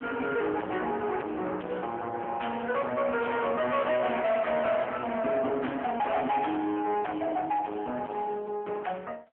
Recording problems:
telephone audio; 280 Hz to 3.2 kHz, AMR-NB
distortion; soft clipping, signal-to-distortion ratio 7 dB

